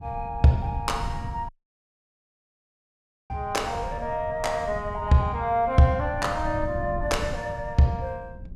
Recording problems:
low-frequency rumble; below 130 Hz, SNR 12 dB
audio cutting out; at 1.5 s for 2 s

